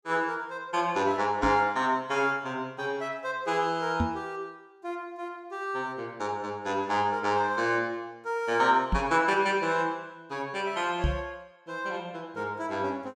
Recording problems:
microphone bump; 4 times, first at 1.5 s; peak +4 dB vs average level

